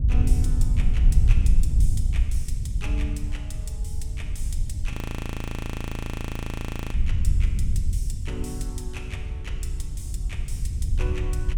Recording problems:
wind noise; below 74 Hz, SNR -12 dB
audio freezing; at 5 s for 2 s

